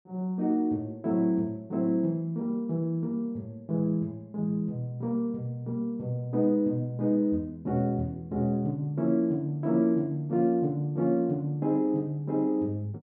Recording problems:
none

